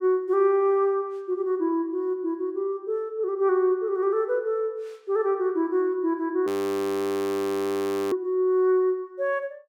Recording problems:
audio freezing; at 6.5 s for 1.5 s

